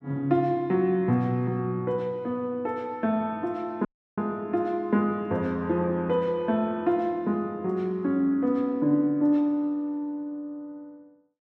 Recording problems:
audio cutting out; at 4 s

